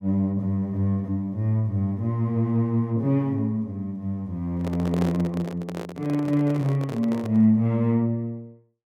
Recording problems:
microphone handling noise; from 4.5 to 7.5 s; peak -3 dB vs average level

